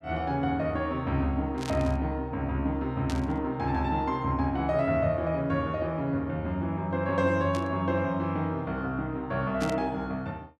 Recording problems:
burst of static; 4 times, first at 1.5 s; peak -6 dB vs average level

